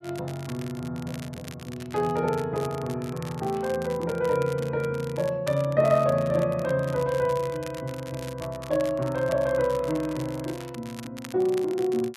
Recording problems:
crackling; vinyl, SNR 18 dB

